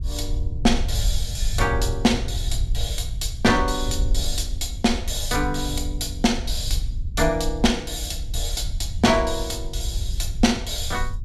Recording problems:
low-frequency rumble; below 66 Hz, SNR 5 dB

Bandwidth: 14.5 kHz